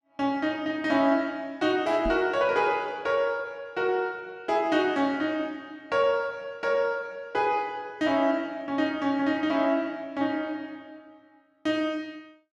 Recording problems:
knock on the microphone; at 2 s; peak -3 dB vs average level

